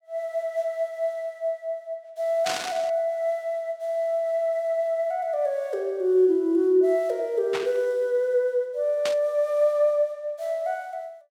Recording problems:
static burst; at 2.5 s, at 7.5 s and at 9 s; peak -1 dB vs average level

